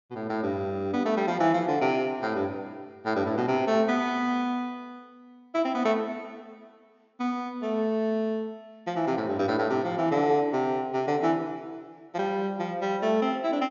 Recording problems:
low-pass filter; nothing above 7.1 kHz

